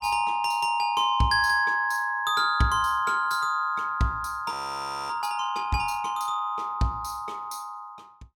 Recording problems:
audio freezing; at 4.5 s for 0.5 s

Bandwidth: 17 kHz